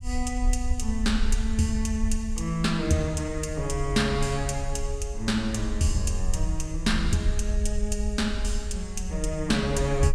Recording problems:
rumble; below 60 Hz, SNR 4 dB

